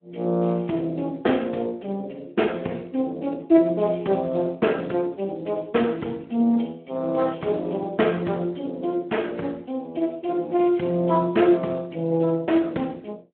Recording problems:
telephone audio; 190 Hz to 3.1 kHz, Speex

